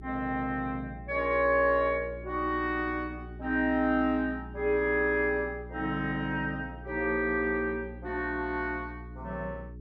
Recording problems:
electrical hum; 60 Hz, harmonics up to 420 Hz, SNR 15 dB

